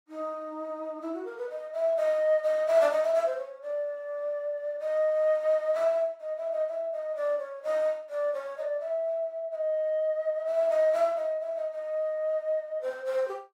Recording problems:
none

